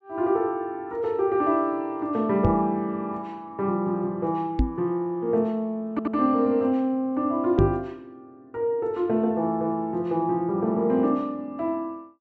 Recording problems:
low-pass filter; nothing above 8 kHz
microphone bump; at 2.5 s, at 4.5 s and at 7.5 s; peak +6 dB vs average level
audio stuttering; at 6 s

